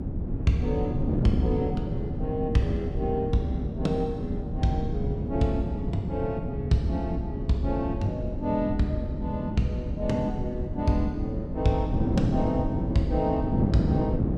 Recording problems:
low-frequency rumble; below 78 Hz, SNR 10 dB
wind noise; below 270 Hz, SNR 2 dB

